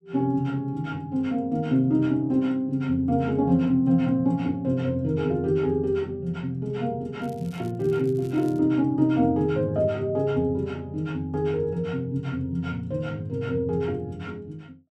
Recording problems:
crackling; from 7 to 8.5 s; loose cable, SNR 29 dB

